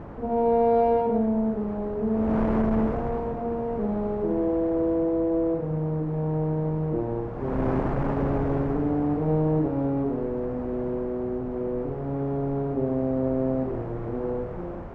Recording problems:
wind noise; below 690 Hz, SNR 9 dB

